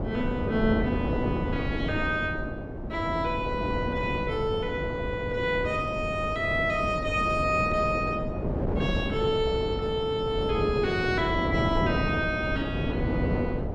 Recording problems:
wind noise; below 420 Hz, SNR 3 dB

